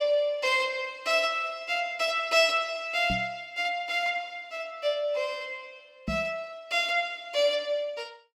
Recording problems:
microphone bump; at 3 s and at 6 s; peak -2 dB vs average level

